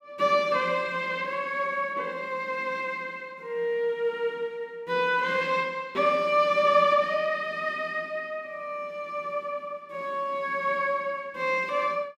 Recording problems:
none

